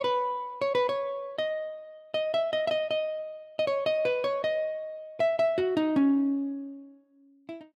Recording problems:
none

